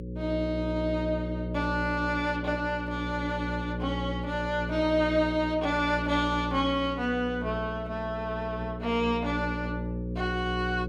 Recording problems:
electrical hum; 60 Hz, harmonics up to 540 Hz, SNR 6 dB

